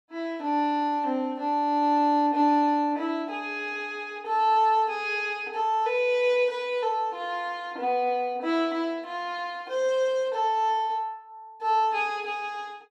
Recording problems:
none

